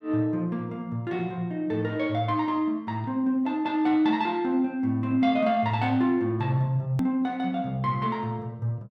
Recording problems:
edit click; at 7 s

